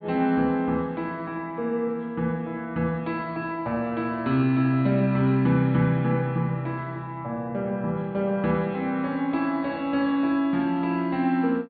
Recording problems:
treble missing; nothing above 4.5 kHz

